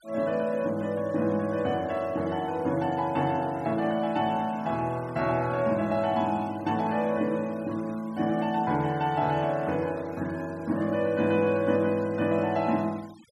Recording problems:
noise reduction artefacts; signal-to-artefact ratio 24 dB

